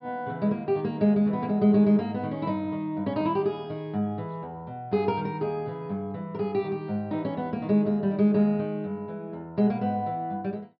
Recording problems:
treble cut off; nothing above 5.2 kHz

